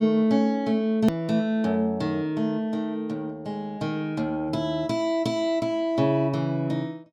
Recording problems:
hard cut with a click; at 1 s

